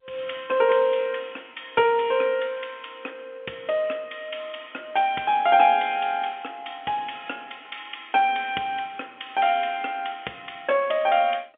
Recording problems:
phone line; 220 Hz to 3.5 kHz, G.711

